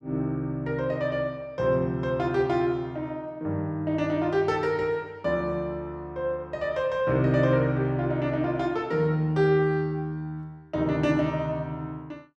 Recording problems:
none

